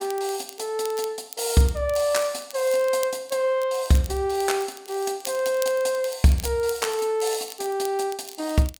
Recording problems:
crackling; vinyl, SNR 17 dB

